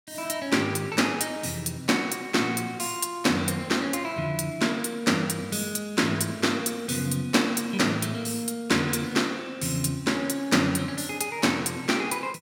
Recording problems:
none

